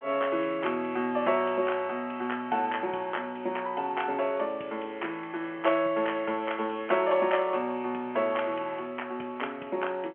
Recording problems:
telephone audio; 220 Hz to 3.2 kHz, G.711

